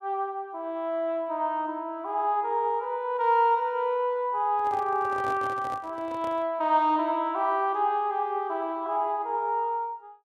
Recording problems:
microphone handling noise; from 4.5 to 6.5 s; peak -8 dB vs average level

